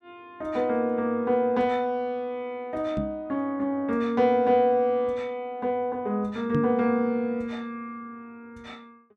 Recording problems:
microphone bump; at 3 s and at 6.5 s; peak +2 dB vs average level

